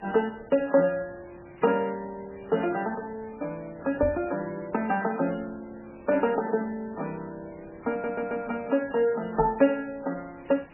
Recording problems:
codec artefacts; MP3, log-spectral distance 12 dB, nothing above 2.5 kHz
hiss; SNR 22 dB
knock on the microphone; at 4 s and at 9.5 s; peak -1 dB vs average level
audio stuttering; at 8 s

